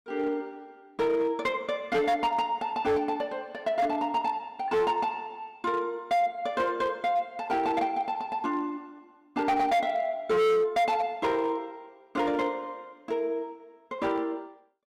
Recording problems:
distorted audio; hard clipping, signal-to-distortion ratio 7 dB

